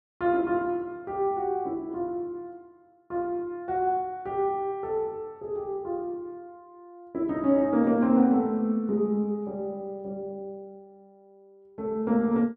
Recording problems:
none

